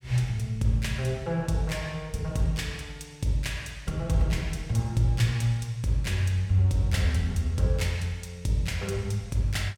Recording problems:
none

